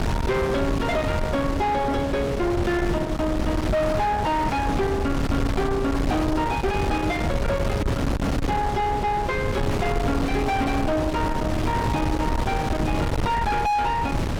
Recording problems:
distortion; soft clipping, signal-to-distortion ratio 7 dB
wind on the microphone; below 570 Hz, SNR 2 dB

